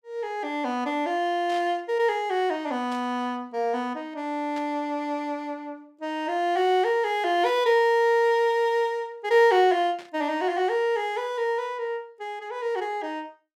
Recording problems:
static burst; 5 times, first at 1.5 s; peak -14 dB vs average level

